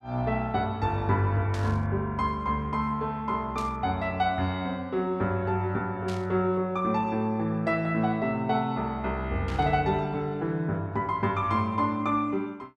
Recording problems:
burst of static; 4 times, first at 1.5 s; peak -10 dB vs average level

